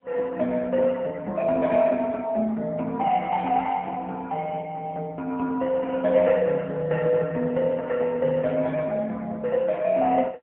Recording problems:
phone line; 240 Hz to 2.8 kHz, AMR-NB, then MP3

